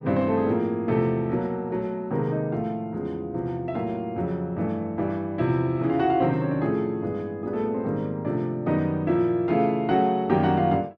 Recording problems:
none

